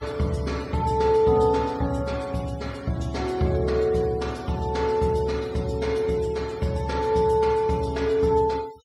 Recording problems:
noise reduction artefacts; signal-to-artefact ratio 23 dB

